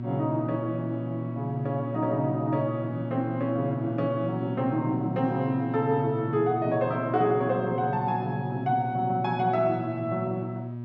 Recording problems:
hum; 60 Hz, harmonics up to 960 Hz, SNR 7 dB

